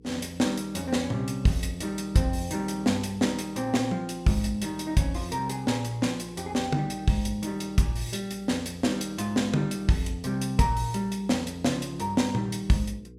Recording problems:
hum; 60 Hz, harmonics up to 480 Hz, SNR 23 dB

